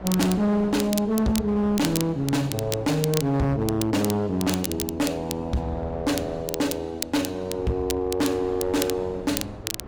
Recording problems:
distortion; hard clipping, signal-to-distortion ratio 8 dB
wind on the microphone; below 600 Hz, SNR 17 dB
crackling; vinyl, SNR 9 dB

